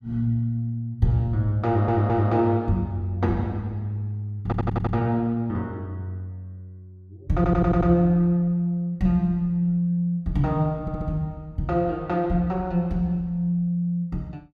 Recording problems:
audio stuttering; 4 times, first at 1.5 s

